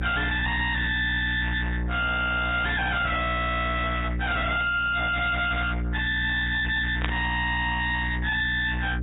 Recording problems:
treble missing; nothing above 3.8 kHz
codec artefacts; AAC, log-spectral distance 3 dB
distortion; soft clipping, signal-to-distortion ratio 7 dB
mains hum; 60 Hz, harmonics up to 2 kHz, SNR 4 dB
burst of static; at 7 s; peak -2 dB vs average level

